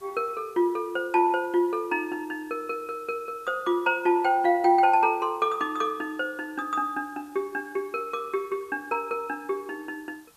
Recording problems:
background hiss; SNR 29 dB

